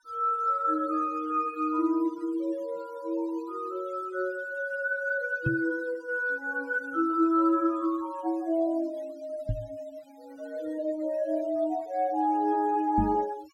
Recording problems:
denoising artefacts; signal-to-artefact ratio 26 dB
knock on the microphone; at 5.5 s, at 9.5 s and at 13 s; peak +3 dB vs average level

